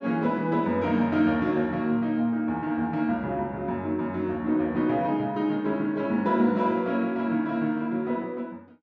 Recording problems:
none

